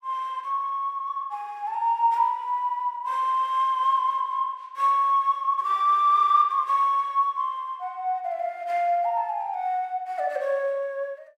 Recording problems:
none

